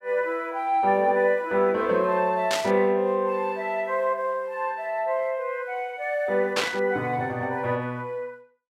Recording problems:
static burst; at 2.5 s and at 6.5 s; peak +4 dB vs average level

